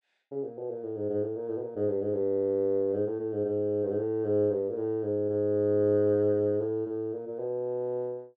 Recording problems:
none

